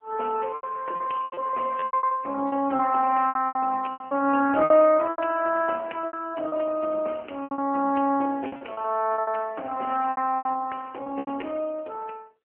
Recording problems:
telephone audio; 260 Hz to 2.9 kHz, AMR-NB
lost packets; 16% of the sound replaced, filled with repeated pitch periods

